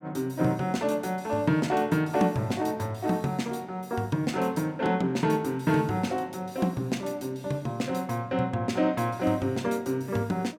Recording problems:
none

